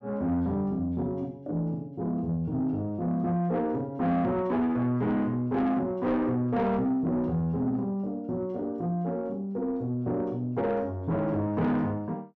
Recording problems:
distortion; soft clipping, signal-to-distortion ratio 11 dB

